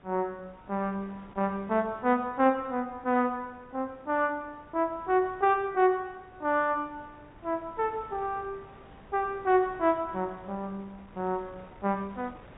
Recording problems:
low-pass filter; nothing above 4 kHz
wind on the microphone; below 1 kHz, SNR 23 dB

